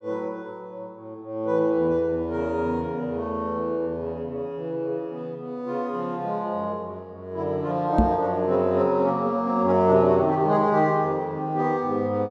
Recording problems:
knock on the microphone; at 8 s; peak +7 dB vs average level

